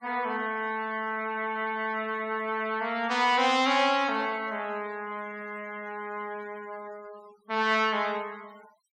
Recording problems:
noise reduction artefacts; signal-to-artefact ratio 24 dB

